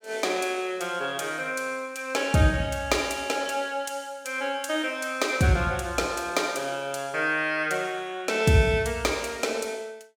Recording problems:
none

